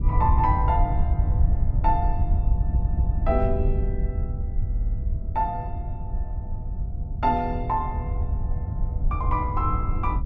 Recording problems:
wind noise; below 86 Hz, SNR -1 dB
stutter; at 2.5 s and at 4.5 s

